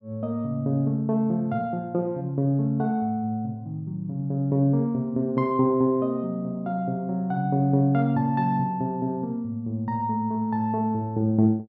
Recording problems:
none

